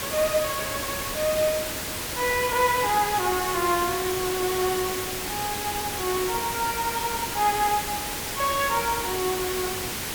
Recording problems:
background hiss; slope -2 dB per octave, SNR 3 dB

